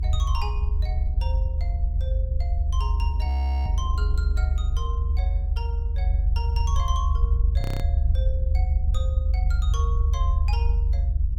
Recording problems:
low-frequency rumble; below 72 Hz, strongest tone 48 Hz, SNR -13 dB
wind noise; below 330 Hz, SNR 14 dB
audio freezing; at 3.5 s and at 7.5 s

